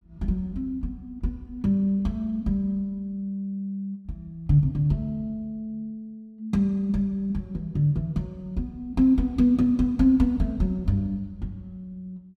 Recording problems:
none

